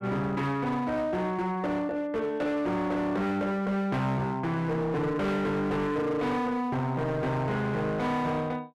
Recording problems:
distortion; hard clipping, uneven, signal-to-distortion ratio 8 dB

